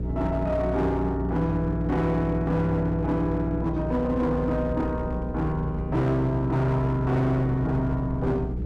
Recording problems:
distortion; hard clipping, signal-to-distortion ratio 11 dB
mains hum; 60 Hz, harmonics up to 480 Hz, SNR 6 dB
wind noise; below 200 Hz, SNR 16 dB

